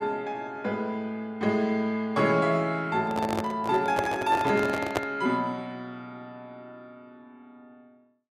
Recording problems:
handling noise; from 3 to 5 s; peak +4 dB vs average level

